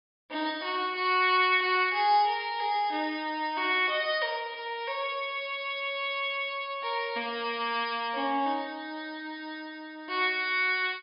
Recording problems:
treble cut off; nothing above 5.1 kHz

